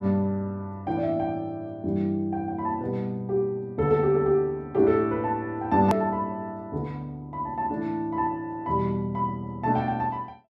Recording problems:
edit click; at 6 s

